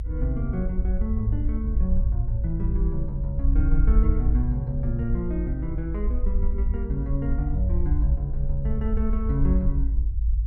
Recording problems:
rumble; below 58 Hz, SNR -4 dB

